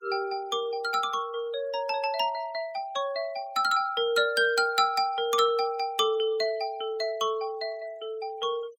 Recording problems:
denoising artefacts; signal-to-artefact ratio 25 dB

